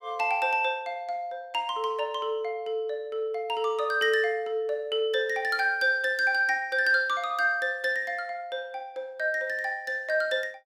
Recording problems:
none

